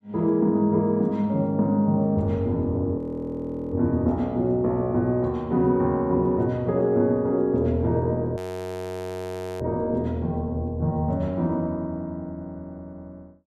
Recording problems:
frozen audio; at 3 s for 0.5 s and at 8.5 s for 1 s

